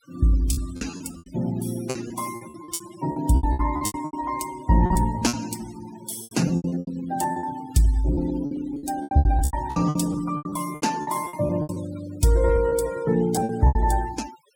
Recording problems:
noise reduction artefacts; signal-to-artefact ratio 17 dB
lost packets; 17% of the sound replaced, filled with repeated pitch periods

